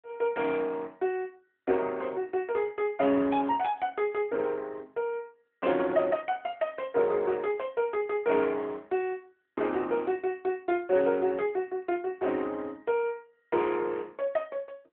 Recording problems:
phone line; 260 Hz to 3.8 kHz, AMR-NB

